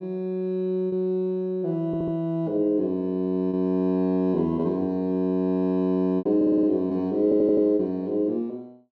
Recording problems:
lost packets; 3% of the sound replaced, filled with repeated pitch periods
audio stuttering; at 2 s, at 6.5 s and at 7 s

